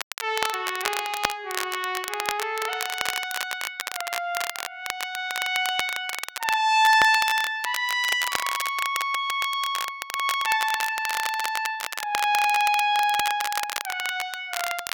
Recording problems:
crackle; vinyl, SNR 6 dB

